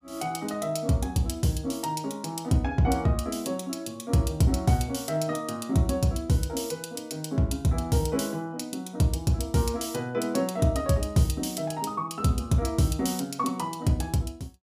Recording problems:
none

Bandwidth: 15 kHz